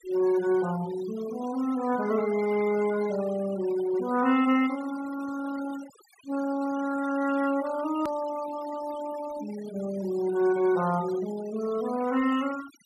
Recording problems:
denoising artefacts; signal-to-artefact ratio 16 dB
edit click; at 8 s

